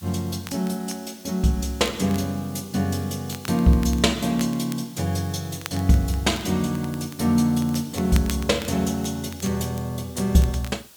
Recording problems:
background hiss; SNR 21 dB
crackle; vinyl, SNR 19 dB

